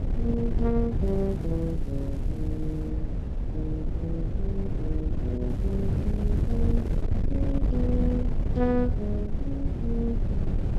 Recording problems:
wind noise; below 120 Hz, SNR -3 dB
crackling; from 1 to 3 s and from 5.5 to 7 s; loose cable, SNR 26 dB

